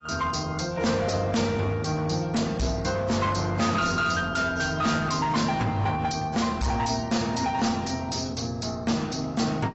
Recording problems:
lossy codec; AAC, log-spectral distance 7 dB, nothing above 7.6 kHz
distorted audio; hard clipping, uneven, signal-to-distortion ratio 7 dB

